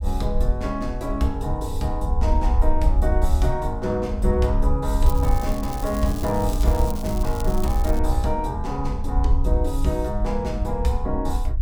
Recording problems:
low-frequency rumble; below 62 Hz, SNR 0 dB
crackling; from 5 to 8 s; loose cable, SNR 14 dB

